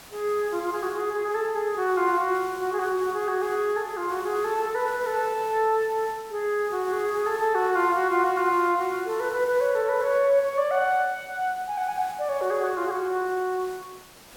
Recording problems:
background hiss; slope -2 dB per octave, SNR 20 dB

